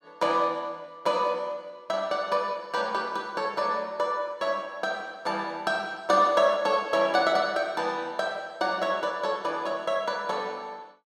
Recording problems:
none

